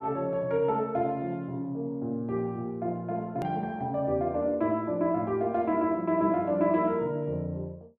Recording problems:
edit click; at 3.5 s

